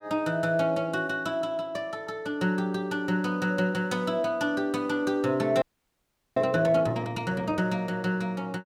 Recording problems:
audio freezing; at 5.5 s for 0.5 s

